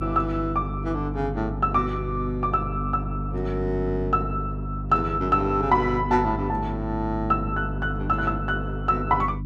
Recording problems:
electrical hum; 50 Hz, harmonics up to 300 Hz, SNR 6 dB

